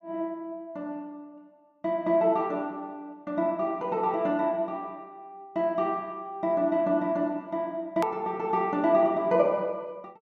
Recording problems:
click at an edit; at 8 s

